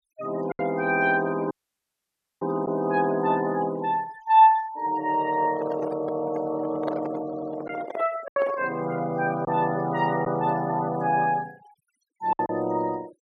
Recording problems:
noise reduction artefacts; signal-to-artefact ratio 22 dB
packet loss; 3% of the sound replaced, filled with silence
dropout; at 1.5 s for 1 s
microphone handling noise; from 5.5 to 9 s; peak -3 dB vs average level
stutter; at 7.5 s

